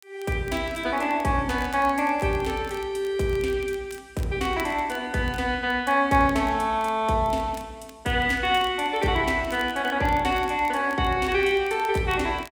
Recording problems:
crackling; vinyl, SNR 24 dB

